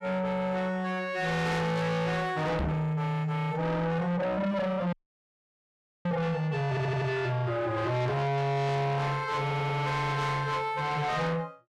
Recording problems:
distortion; soft clipping, signal-to-distortion ratio 7 dB
microphone bump; at 2.5 s; peak +3 dB vs average level
dropout; at 5 s for 1 s
audio stuttering; at 6.5 s and at 9.5 s

